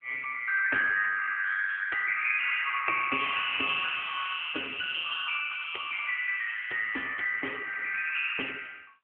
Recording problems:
phone line; 340 Hz to 3.4 kHz, AMR-NB

